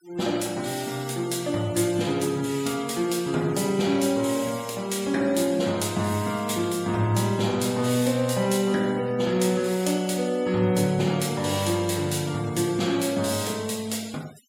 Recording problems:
denoising artefacts; signal-to-artefact ratio 20 dB

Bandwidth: 16.5 kHz